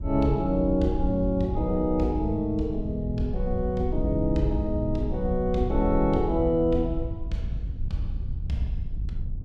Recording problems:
wind noise; below 76 Hz, SNR 6 dB

